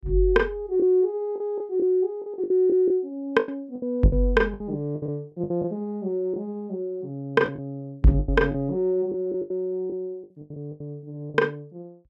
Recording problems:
lost packets; 11% of the sound replaced, filled with the last packet

